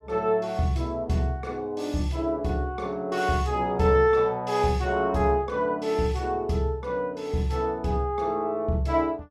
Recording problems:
none

